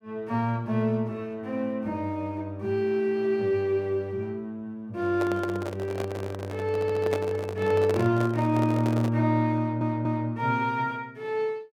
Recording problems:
handling noise; from 5 to 9 s; peak +1 dB vs average level
stutter; at 6.5 s and at 9.5 s

